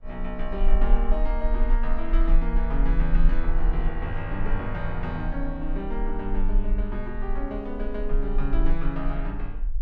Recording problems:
low-frequency rumble; below 36 Hz, strongest tone 18 Hz, SNR -3 dB
wind on the microphone; below 820 Hz, SNR 26 dB

